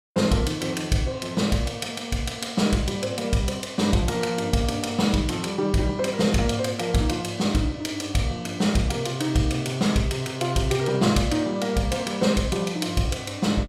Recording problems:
none

